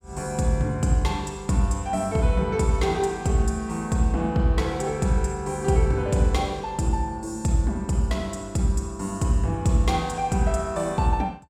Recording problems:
none

